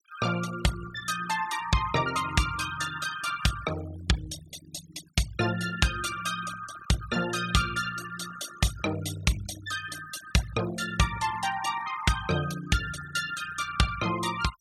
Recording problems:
denoising artefacts; signal-to-artefact ratio 13 dB

